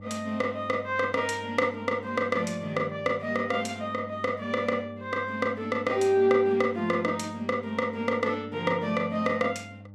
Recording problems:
mains hum; 50 Hz, harmonics up to 600 Hz, SNR 18 dB

